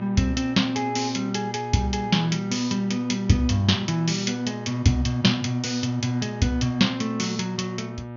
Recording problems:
low-pass filter; nothing above 6.7 kHz
hum; 60 Hz, harmonics up to 2.2 kHz, SNR 12 dB

